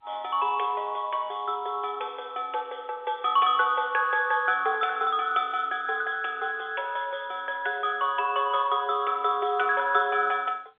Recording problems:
telephone audio; 340 Hz to 3.6 kHz, G.711

